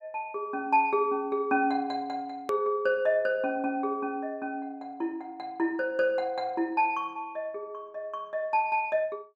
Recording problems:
hard cut with a click; at 2.5 s

